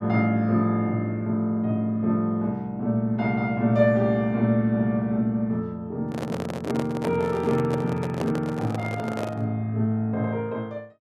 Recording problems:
microphone handling noise; from 6 to 9.5 s; peak -2 dB vs average level

